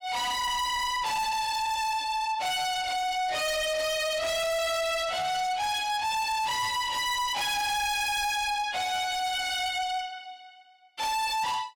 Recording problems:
distortion; soft clipping, signal-to-distortion ratio 6 dB

